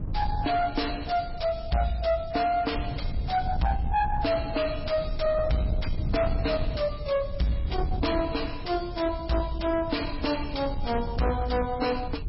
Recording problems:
lossy codec; MP3, log-spectral distance 5 dB, nothing above 5.5 kHz
distorted audio; soft clipping, signal-to-distortion ratio 7 dB
low-frequency rumble; below 110 Hz, SNR 7 dB

